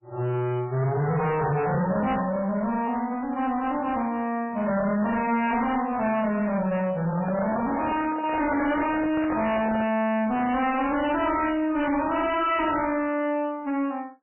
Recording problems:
lossy compression; MP3, log-spectral distance 4 dB, nothing above 2.9 kHz
distortion; hard clipping, uneven, signal-to-distortion ratio 7 dB
microphone handling noise; from 7 to 10 s; peak -2 dB vs average level

